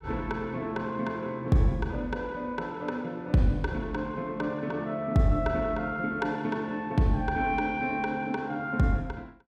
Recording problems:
none

